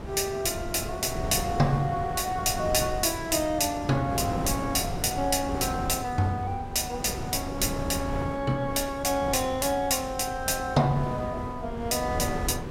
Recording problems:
wind noise; below 430 Hz, SNR 8 dB

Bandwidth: 16 kHz